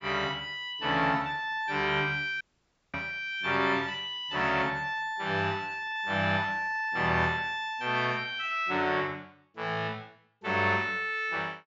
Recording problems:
low-pass filter; nothing above 8 kHz
dropout; at 2.5 s for 0.5 s

